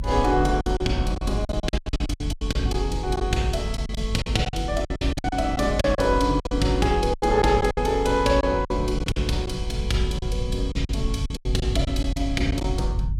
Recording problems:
rumble; below 82 Hz, strongest tone 48 Hz, SNR 5 dB
packet loss; 14% of the sound replaced, filled with silence

